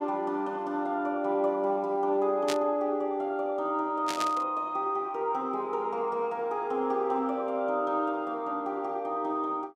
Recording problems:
burst of static; at 2.5 s and at 4 s; peak +1 dB vs average level

